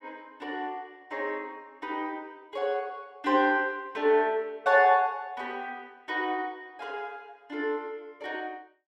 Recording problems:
none

